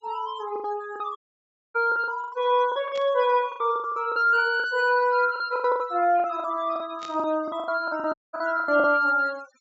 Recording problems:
treble missing; nothing above 8 kHz
noise reduction artefacts; signal-to-artefact ratio 22 dB
lost packets; 16% of the sound replaced, filled with the last packet
dropout; at 1 s for 0.5 s and at 8 s
static burst; at 3 s, at 5.5 s and at 7 s; peak -13 dB vs average level

